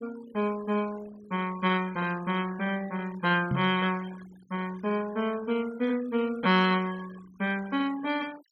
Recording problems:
denoising artefacts; signal-to-artefact ratio 20 dB
knock on the microphone; at 3.5 s; peak +4 dB vs average level

